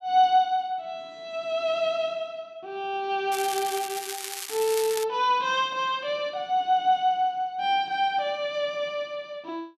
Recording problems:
crackling; from 3.5 to 5 s; loose cable, SNR 8 dB

